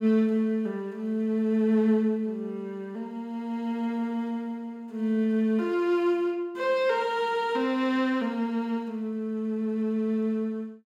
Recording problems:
none

